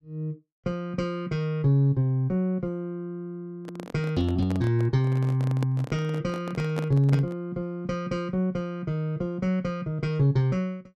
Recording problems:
microphone handling noise; from 3.5 to 7.5 s; peak -3 dB vs average level

